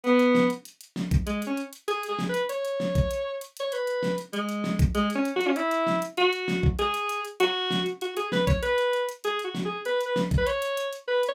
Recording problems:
none

